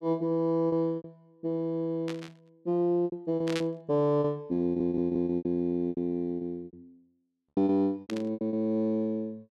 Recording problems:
packet loss; 13% of the sound replaced, filled with repeated pitch periods
burst of static; at 2 s, at 3.5 s and at 8 s; peak -1 dB vs average level
stutter; at 4.5 s

